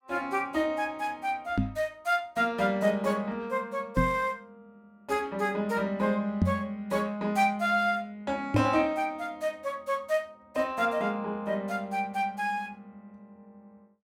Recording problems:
knock on the microphone; 4 times, first at 1.5 s; peak +8 dB vs average level

